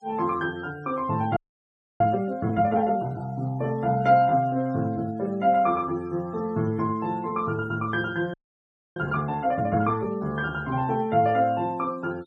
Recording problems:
denoising artefacts; signal-to-artefact ratio 26 dB
audio freezing; at 1.5 s for 0.5 s and at 8.5 s for 0.5 s

